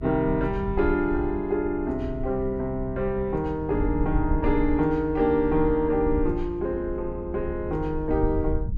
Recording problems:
rumble; below 70 Hz, SNR 8 dB

